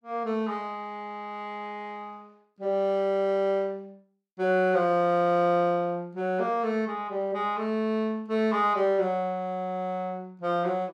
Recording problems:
none

